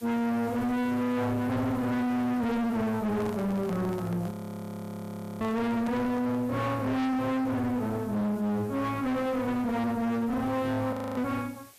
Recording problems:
distortion; hard clipping, uneven, signal-to-distortion ratio 5 dB
hiss; slope 0 dB per octave, SNR 25 dB
handling noise; from 3 to 6.5 s; peak -5 dB vs average level
frozen audio; at 4.5 s for 1 s and at 11 s

